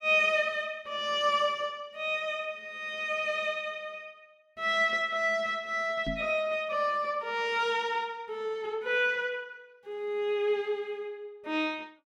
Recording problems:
microphone bump; at 6 s; peak -3 dB vs average level

